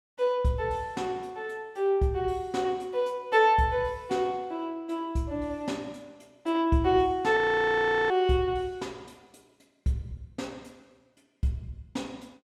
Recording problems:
audio freezing; at 7.5 s for 0.5 s

